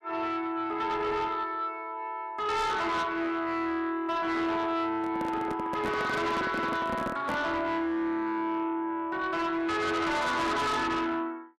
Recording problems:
distorted audio; soft clipping, signal-to-distortion ratio 7 dB
microphone handling noise; from 5 to 7.5 s; peak -1 dB vs average level

